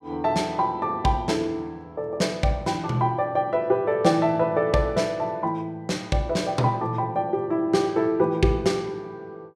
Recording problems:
none

